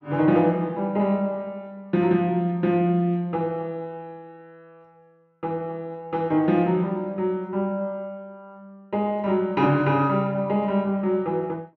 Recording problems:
none

